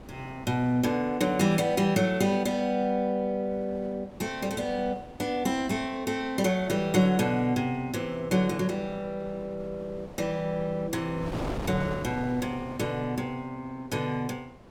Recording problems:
wind noise; below 670 Hz, SNR 15 dB

